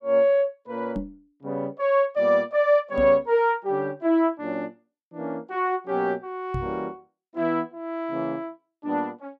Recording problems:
knock on the microphone; at 1 s, at 3 s and at 6.5 s; peak -2 dB vs average level

